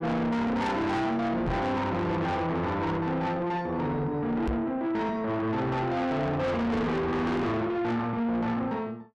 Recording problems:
distorted audio; soft clipping, signal-to-distortion ratio 6 dB
knock on the microphone; at 1.5 s and at 4.5 s; peak +3 dB vs average level

